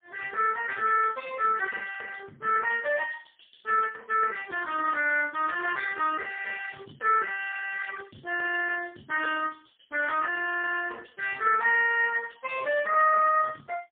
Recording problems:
telephone audio; 190 Hz to 3.3 kHz, AMR-NB, then MP3

